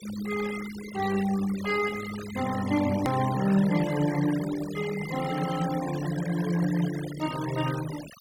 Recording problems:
denoising artefacts; signal-to-artefact ratio 12 dB
edit click; at 3 s

